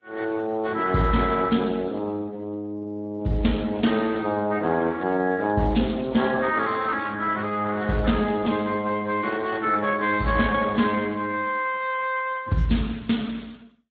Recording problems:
lossy codec; AAC, then Speex, log-spectral distance 4 dB

